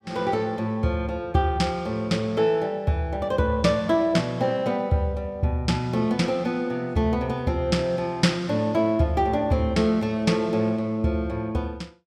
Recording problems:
none

